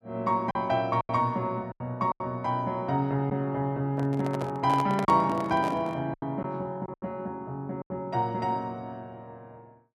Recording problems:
packet loss; 6% of the sound replaced, filled with silence
microphone handling noise; from 4 to 6 s; peak 0 dB vs average level

